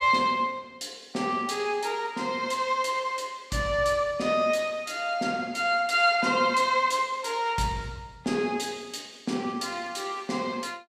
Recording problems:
none

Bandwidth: 15 kHz